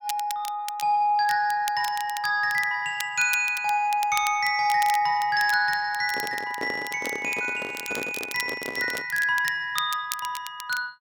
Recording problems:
crackle; vinyl, SNR 14 dB
microphone handling noise; from 6 to 9 s; peak -5 dB vs average level

